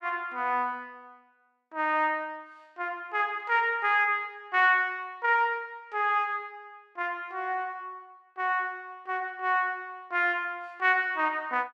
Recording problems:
none

